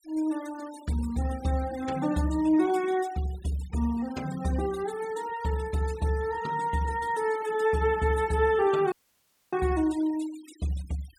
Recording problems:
denoising artefacts; signal-to-artefact ratio 19 dB
audio cutting out; at 9 s for 0.5 s

